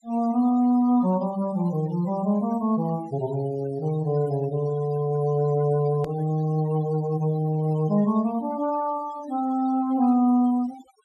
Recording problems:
denoising artefacts; signal-to-artefact ratio 20 dB
edit click; at 6 s

